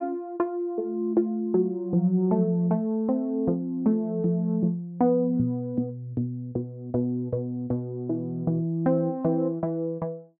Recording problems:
low-pass filter; nothing above 4.8 kHz

